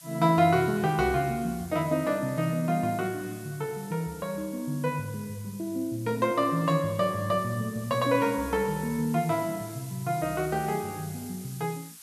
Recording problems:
background hiss; slope +4 dB per octave, SNR 18 dB

